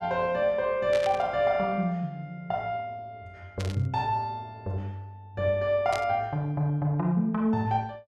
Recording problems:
static burst; at 1 s, at 3.5 s and at 6 s; peak -6 dB vs average level

